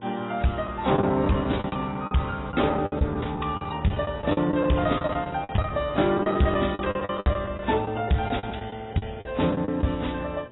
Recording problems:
lossy codec; AAC, then AAC, log-spectral distance 5 dB, nothing above 3.8 kHz
distortion; hard clipping, uneven, signal-to-distortion ratio 10 dB
mains hum; 60 Hz, harmonics up to 1.6 kHz, SNR 26 dB
lost packets; 14% of the sound replaced, filled with the last packet

